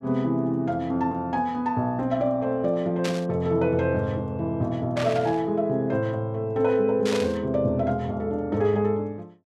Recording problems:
burst of static; at 3 s, at 5 s and at 7 s; peak -3 dB vs average level

